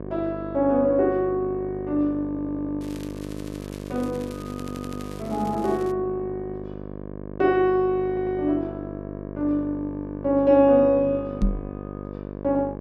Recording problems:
hum; 50 Hz, harmonics up to 1.3 kHz, SNR 11 dB
stutter; 4 times, first at 2.5 s
crackle; from 3 to 6 s; loose cable, SNR 23 dB
microphone bump; at 11 s; peak +3 dB vs average level

